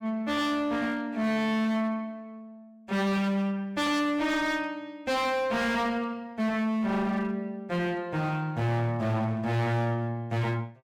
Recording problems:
distorted audio; hard clipping, signal-to-distortion ratio 7 dB

